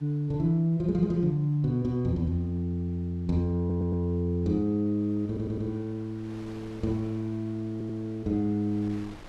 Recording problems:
wind on the microphone; below 1.4 kHz, SNR 25 dB
audio stuttering; at 3.5 s, at 5.5 s and at 7.5 s

